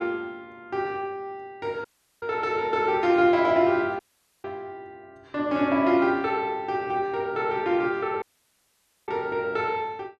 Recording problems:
audio cutting out; at 2 s, at 4 s and at 8 s for 1 s

